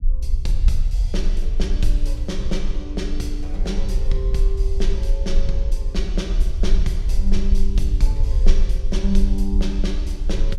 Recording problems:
low-frequency rumble; below 44 Hz, strongest tone 20 Hz, SNR -6 dB

